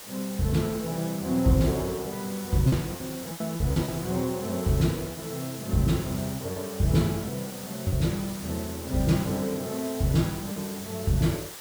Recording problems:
background hiss; slope -1 dB per octave, SNR 11 dB
packet loss; 5% of the sound replaced, filled with repeated pitch periods

